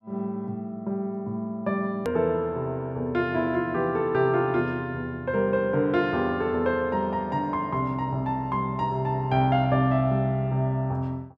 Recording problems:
click at an edit; at 2 s

